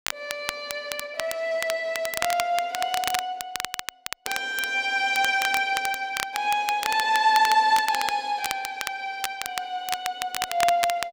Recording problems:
crackle; vinyl, SNR 7 dB

